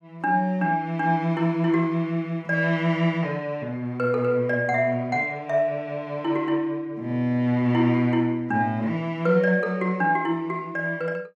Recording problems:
none

